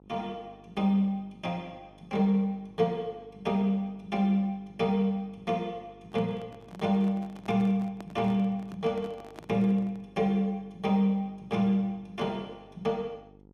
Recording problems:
hum; 50 Hz, harmonics up to 950 Hz, SNR 26 dB
handling noise; from 6 to 10 s; peak -11 dB vs average level

